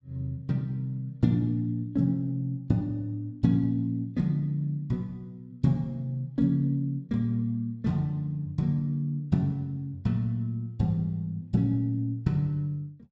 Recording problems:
none

